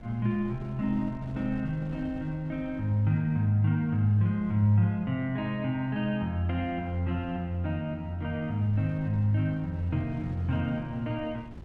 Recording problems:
wind on the microphone; below 200 Hz, SNR 19 dB

